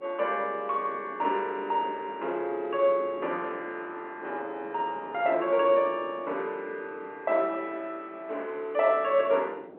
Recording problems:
telephone audio; 280 Hz to 3.3 kHz, G.711
wind on the microphone; below 530 Hz, SNR 19 dB

